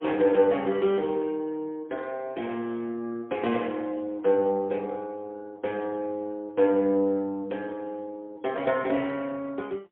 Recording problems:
phone line; 220 Hz to 3.4 kHz, AMR-NB, then MP3

